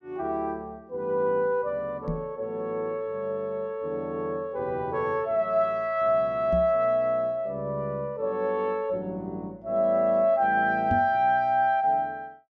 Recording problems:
knock on the microphone; at 2 s, at 6.5 s and at 11 s; peak 0 dB vs average level

